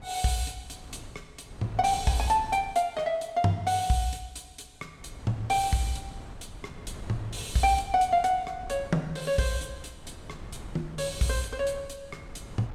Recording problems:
wind noise; below 250 Hz, SNR 17 dB

